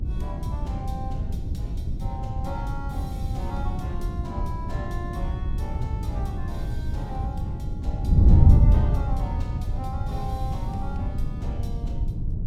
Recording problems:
hum; 60 Hz, harmonics up to 360 Hz, SNR 5 dB
wind noise; below 110 Hz, SNR -12 dB

